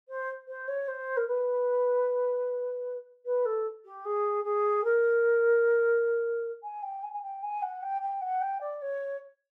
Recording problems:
none

